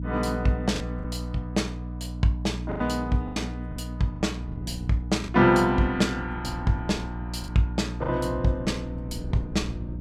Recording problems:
electrical hum; 60 Hz, harmonics up to 300 Hz, SNR 8 dB
wind on the microphone; below 180 Hz, SNR 16 dB
lost packets; 5% of the sound replaced, filled with the last packet

